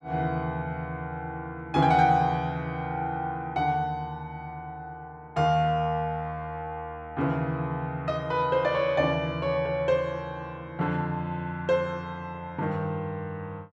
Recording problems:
none

